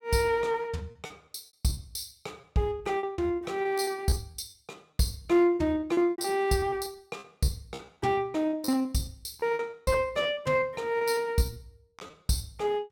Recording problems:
packet loss; 16% of the sound replaced, filled with repeated pitch periods

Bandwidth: 17 kHz